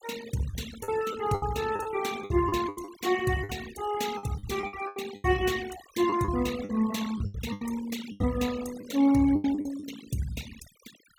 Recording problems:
noise reduction artefacts; signal-to-artefact ratio 13 dB
packet loss; 13% of the sound replaced, filled with the last packet

